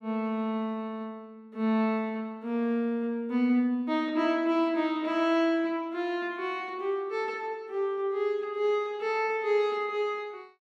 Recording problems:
none

